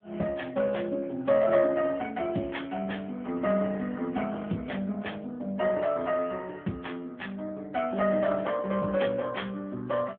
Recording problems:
telephone audio; 130 Hz to 3.4 kHz, AMR-NB

